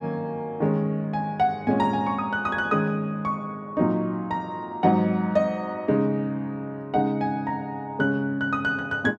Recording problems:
none

